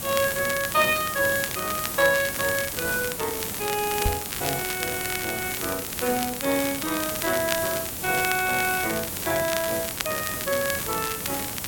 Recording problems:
hiss; slope -3 dB per octave, SNR 3 dB
crackling; vinyl, SNR 8 dB
microphone thump; at 4 s; peak +4 dB vs average level

